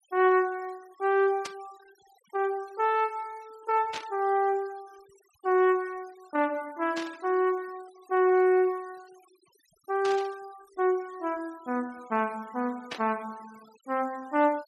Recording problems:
noise reduction artefacts; signal-to-artefact ratio 26 dB
static burst; 5 times, first at 1.5 s; peak -4 dB vs average level

